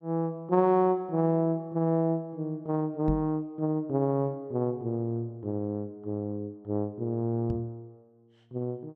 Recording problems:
microphone thump; at 3 s and at 7.5 s; peak 0 dB vs average level

